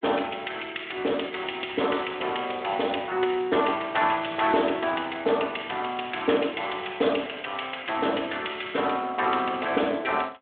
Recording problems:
phone line; 240 Hz to 3.5 kHz, Speex

